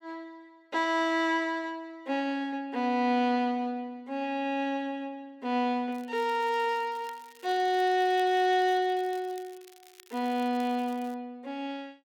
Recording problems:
crackling; from 6 to 11 s; loose cable, SNR 25 dB

